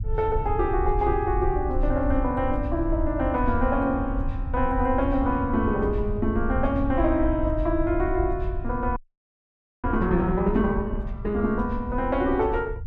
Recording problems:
rumble; below 78 Hz, SNR 6 dB
audio freezing; at 9 s for 1 s

